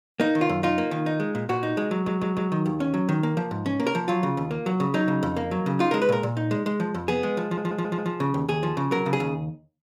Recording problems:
audio stuttering; at 2 s and at 7.5 s

